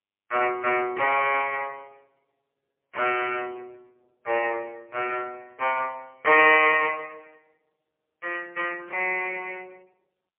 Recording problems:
telephone audio; 340 Hz to 3 kHz, AMR-NB, then MP3

